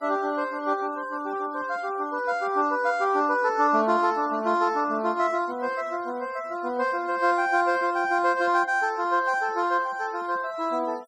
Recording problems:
denoising artefacts; signal-to-artefact ratio 25 dB

